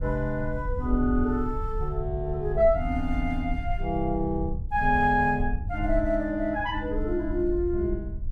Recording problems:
rumble; below 66 Hz, SNR 7 dB

